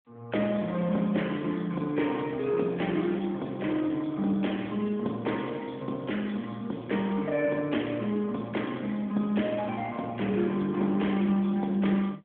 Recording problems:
phone line; 220 Hz to 3.6 kHz, AMR-NB

